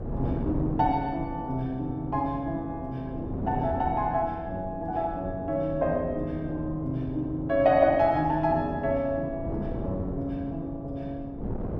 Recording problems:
wind on the microphone; below 340 Hz, SNR 9 dB

